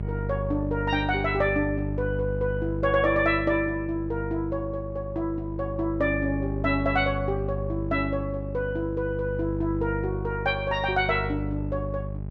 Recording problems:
hum; 50 Hz, harmonics up to 650 Hz, SNR 5 dB

